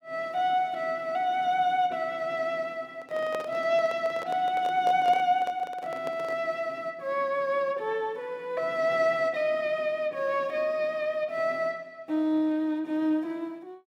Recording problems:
handling noise; from 3 to 6.5 s; peak -3 dB vs average level

